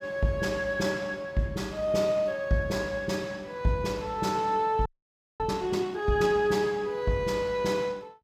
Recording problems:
audio freezing; at 5 s for 0.5 s

